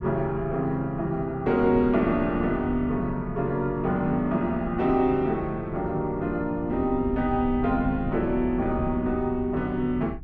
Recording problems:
rumble; below 140 Hz, SNR 12 dB

